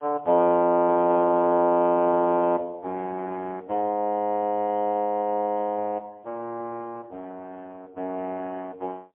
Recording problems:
phone line; 220 Hz to 2.9 kHz, AMR-NB, then MP3

